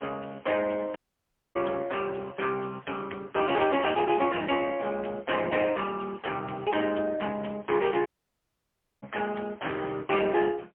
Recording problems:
phone line; 280 Hz to 3.3 kHz, AMR-NB, then MP3
audio cutting out; at 1 s for 0.5 s and at 8 s for 1 s

